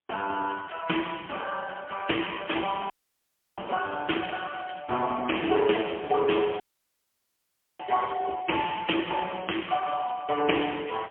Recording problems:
telephone audio; 260 Hz to 3.2 kHz, AMR-NB, then MP3
dropout; at 3 s for 0.5 s and at 6.5 s for 1 s

